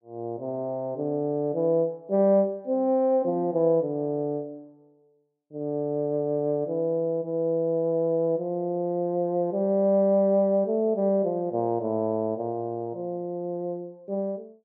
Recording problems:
none

